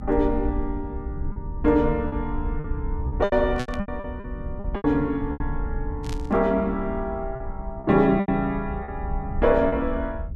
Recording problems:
low-frequency rumble; below 72 Hz, SNR 9 dB
packet loss; 9% of the sound replaced, filled with repeated pitch periods
static burst; at 3.5 s and at 6 s; peak -8 dB vs average level

